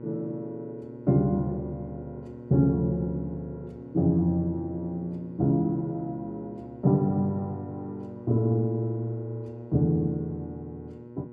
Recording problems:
hum; 60 Hz, harmonics up to 1.1 kHz, SNR 16 dB

